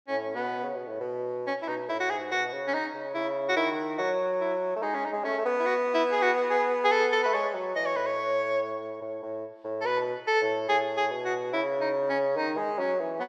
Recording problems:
none

